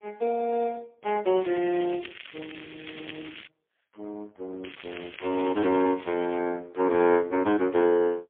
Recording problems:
telephone audio; 240 Hz to 2.9 kHz, AMR-NB, then MP3
crackle; from 1.5 to 3.5 s and from 4.5 to 6.5 s; loose cable, SNR 17 dB

